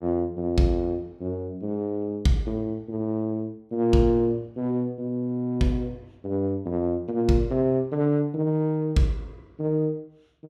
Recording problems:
none

